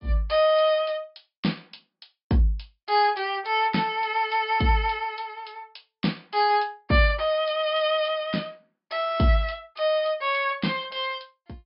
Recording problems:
treble missing; nothing above 5.5 kHz

